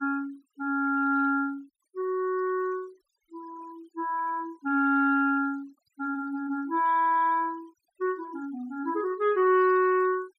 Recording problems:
noise reduction artefacts; signal-to-artefact ratio 28 dB

